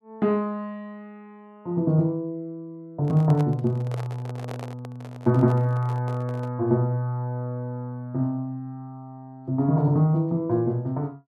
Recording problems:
microphone handling noise; from 3 to 6.5 s; peak -8 dB vs average level

